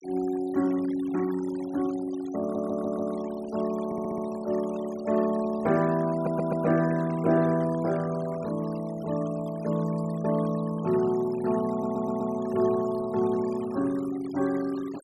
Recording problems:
denoising artefacts; signal-to-artefact ratio 19 dB
audio stuttering; 4 times, first at 2.5 s

